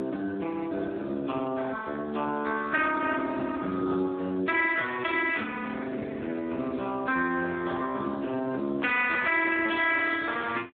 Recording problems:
phone line; 150 Hz to 3.7 kHz, Speex

